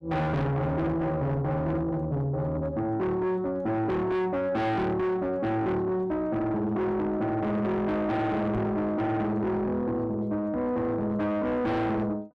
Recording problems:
distorted audio; soft clipping, signal-to-distortion ratio 7 dB
microphone thump; at 8.5 s; peak -1 dB vs average level

